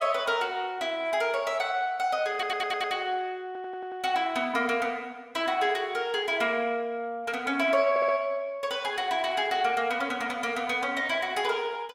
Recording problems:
stutter; at 2.5 s, at 3.5 s and at 8 s

